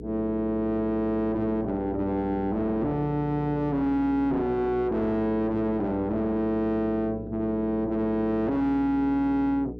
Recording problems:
distorted audio; soft clipping, signal-to-distortion ratio 4 dB
electrical hum; 60 Hz, harmonics up to 480 Hz, SNR 12 dB

